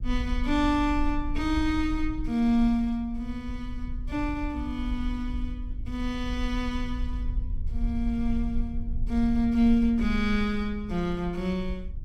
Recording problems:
rumble; below 56 Hz, SNR 7 dB

